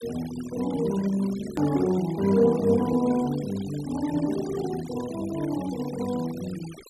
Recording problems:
denoising artefacts; signal-to-artefact ratio 17 dB
hard cut with a click; at 1.5 s

